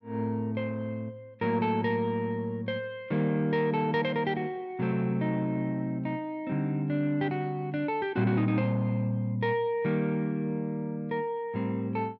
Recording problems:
none

